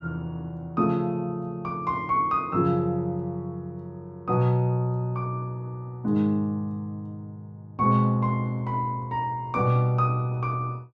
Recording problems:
none

